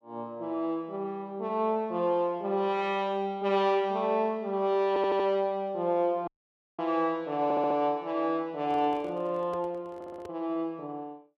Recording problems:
stutter; at 5 s, at 7.5 s and at 10 s
dropout; at 6.5 s for 0.5 s
microphone handling noise; from 8.5 to 10 s; peak -10 dB vs average level

